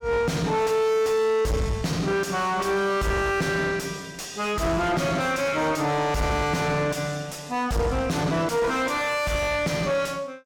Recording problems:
distortion; soft clipping, signal-to-distortion ratio 5 dB

